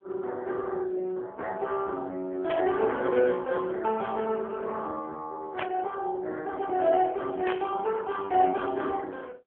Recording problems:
phone line; 240 Hz to 2.6 kHz, AMR-NB
burst of static; at 2.5 s, at 5.5 s and at 7.5 s; peak -2 dB vs average level

